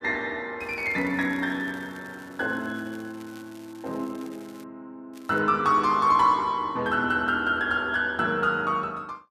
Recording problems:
crackling; from 0.5 to 4.5 s and at 5 s; loose cable, SNR 27 dB

